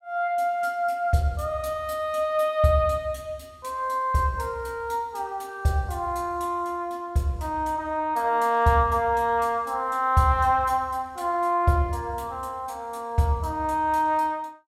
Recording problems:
none

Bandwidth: 16 kHz